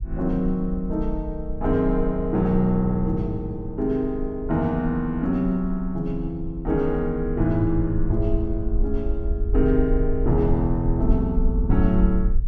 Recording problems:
low-frequency rumble; below 54 Hz, SNR 6 dB

